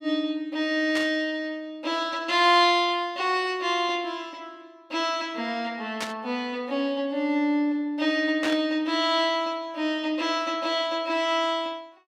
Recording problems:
static burst; at 1 s, at 6 s and at 8.5 s; peak -2 dB vs average level

